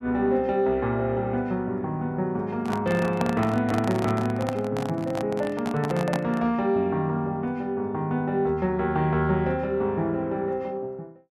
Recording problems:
microphone handling noise; from 2.5 to 6.5 s; peak +1 dB vs average level

